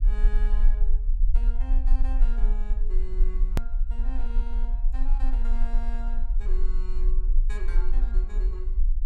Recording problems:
rumble; below 36 Hz, strongest tone 22 Hz, SNR -16 dB
edit click; at 3.5 s

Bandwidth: 16 kHz